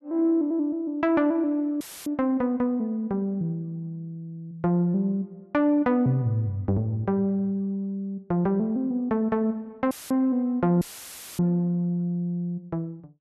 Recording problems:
audio cutting out; at 2 s, at 10 s and at 11 s for 0.5 s; filled with static

